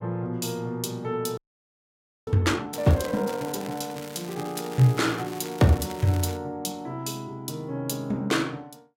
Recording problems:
audio freezing; at 1.5 s for 1 s
crackle; from 2.5 to 6.5 s; loose cable, SNR 16 dB

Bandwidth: 16 kHz